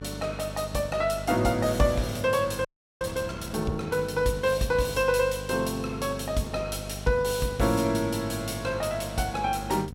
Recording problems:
mains hum; 50 Hz, harmonics up to 750 Hz, SNR 12 dB
frozen audio; at 2.5 s

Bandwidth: 16.5 kHz